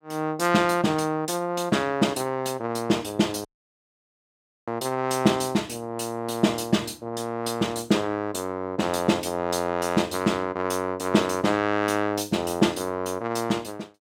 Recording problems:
audio cutting out; at 3.5 s for 1 s

